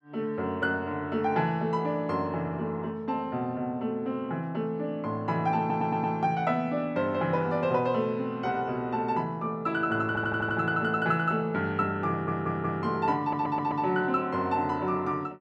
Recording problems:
audio stuttering; 4 times, first at 5.5 s

